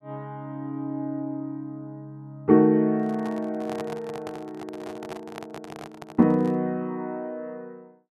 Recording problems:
handling noise; from 3 to 6.5 s; peak -6 dB vs average level

